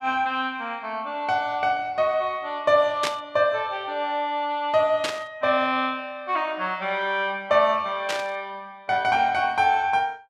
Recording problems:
static burst; at 3 s, at 5 s and at 8 s; peak +1 dB vs average level

